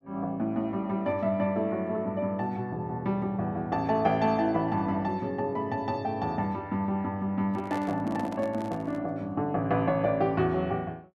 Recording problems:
handling noise; from 7.5 to 9 s; peak -6 dB vs average level

